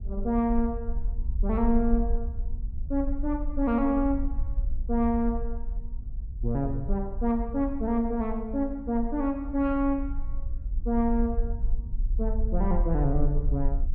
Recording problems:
rumble; below 50 Hz, SNR 5 dB

